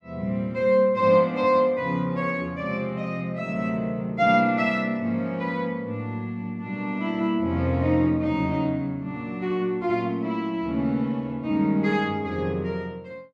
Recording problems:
none

